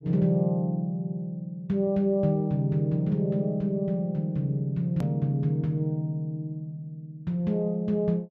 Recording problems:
treble missing; nothing above 7.9 kHz
edit click; at 5 s

